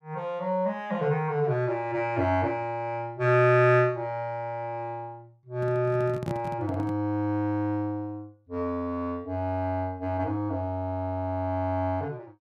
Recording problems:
handling noise; from 5.5 to 7 s; peak -2 dB vs average level

